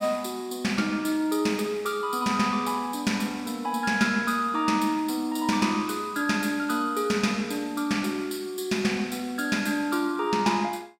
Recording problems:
none

